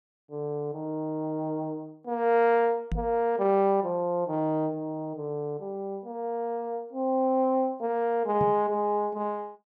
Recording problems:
knock on the microphone; at 3 s and at 8.5 s; peak 0 dB vs average level

